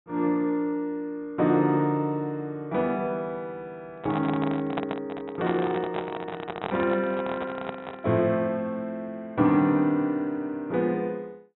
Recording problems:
treble missing; nothing above 3.9 kHz
handling noise; from 4 to 8 s; peak +1 dB vs average level

